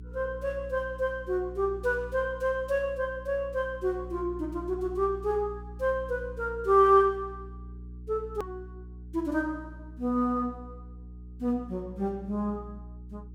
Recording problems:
hum; 60 Hz, harmonics up to 420 Hz, SNR 15 dB
click at an edit; at 8.5 s

